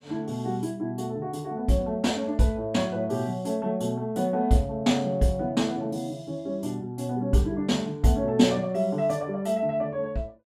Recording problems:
none

